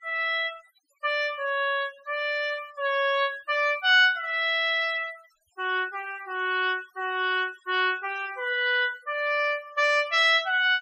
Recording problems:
denoising artefacts; signal-to-artefact ratio 24 dB

